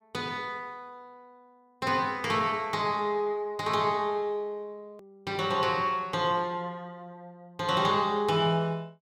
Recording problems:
hard cut with a click; at 5 s

